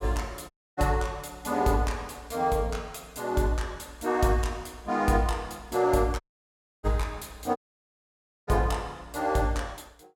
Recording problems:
audio cutting out; at 0.5 s, at 6 s for 0.5 s and at 7.5 s for 1 s

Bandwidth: 17 kHz